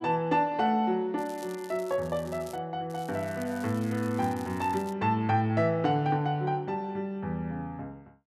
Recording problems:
crackling; from 1 to 2.5 s and from 3 to 5 s; loose cable, SNR 21 dB

